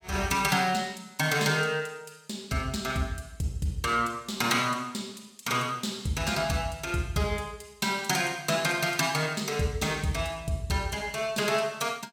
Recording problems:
none

